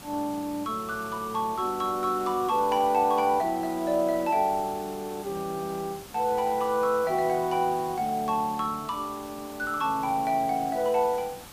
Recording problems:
hiss; slope -3 dB per octave, SNR 17 dB

